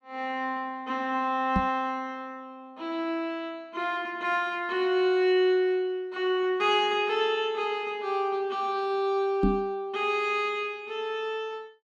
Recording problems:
microphone bump; at 1.5 s and at 9.5 s; peak +6 dB vs average level

